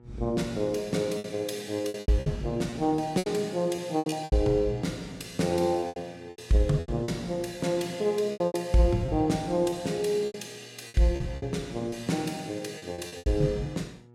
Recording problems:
hum; 60 Hz, harmonics up to 1.3 kHz, SNR 25 dB
packet loss; 12% of the sound replaced, filled with repeated pitch periods

